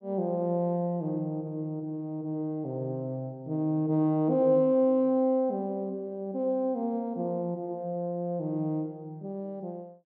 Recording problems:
none

